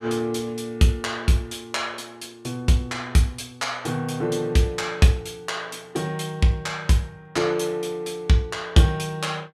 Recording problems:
none

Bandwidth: 14.5 kHz